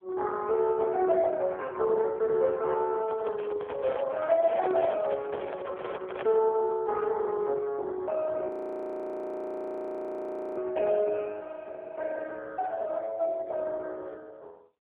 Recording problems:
phone line; 340 Hz to 2.5 kHz, AMR-NB
handling noise; from 3 to 6.5 s; peak -3 dB vs average level
audio freezing; at 8.5 s for 2 s

